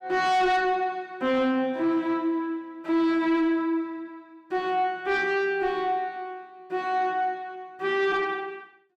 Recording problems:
distorted audio; soft clipping, signal-to-distortion ratio 11 dB

